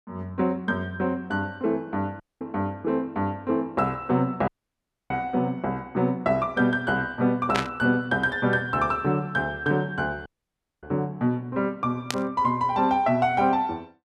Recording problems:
dropout; at 2 s, at 4.5 s for 0.5 s and at 10 s for 0.5 s
static burst; at 7.5 s and at 12 s; peak +3 dB vs average level

